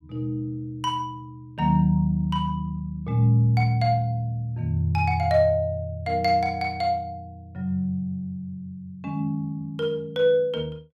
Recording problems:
none

